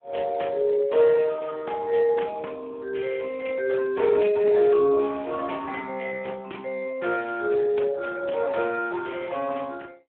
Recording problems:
telephone audio; 300 Hz to 3.2 kHz, Speex

